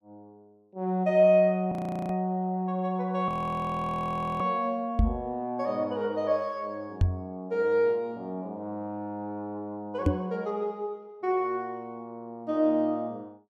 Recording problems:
frozen audio; at 1.5 s and at 3.5 s for 1 s
microphone thump; at 5 s, at 7 s and at 10 s; peak +8 dB vs average level

